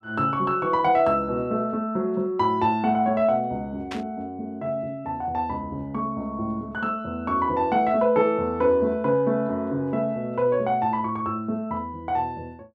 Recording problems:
burst of static; at 4 s; peak -6 dB vs average level

